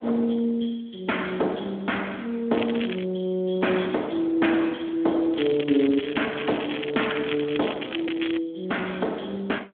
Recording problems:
telephone audio; 240 Hz to 3.4 kHz, Speex
crackling; at 2.5 s and from 5.5 to 8.5 s; loose cable, SNR 9 dB

